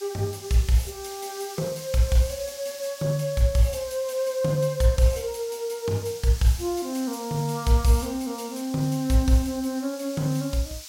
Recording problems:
background hiss; slope +5 dB per octave, SNR 14 dB

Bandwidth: 16 kHz